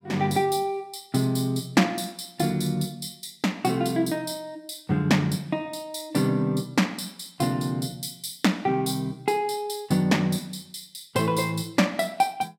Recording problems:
none

